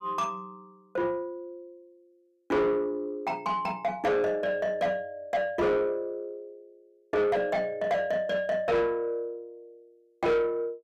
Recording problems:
distorted audio; soft clipping, signal-to-distortion ratio 8 dB

